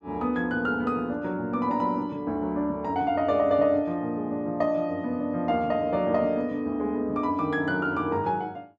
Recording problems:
none

